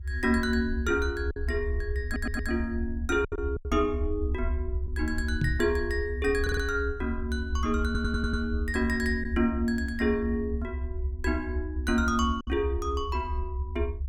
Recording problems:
rumble; below 76 Hz, strongest tone 64 Hz, SNR 4 dB
packet loss; 2% of the sound replaced, filled with silence
stutter; at 2 s, at 6.5 s and at 8 s
microphone thump; at 5.5 s; peak +4 dB vs average level

